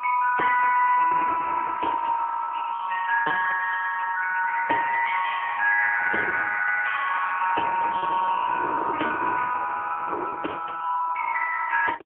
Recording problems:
telephone audio; 520 Hz to 2.6 kHz, AMR-NB, then MP3
wind noise; below 540 Hz, SNR 13 dB
lost packets; 3% of the sound replaced, filled with repeated pitch periods

